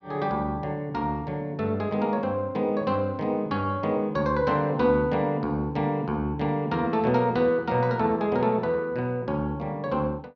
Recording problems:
none

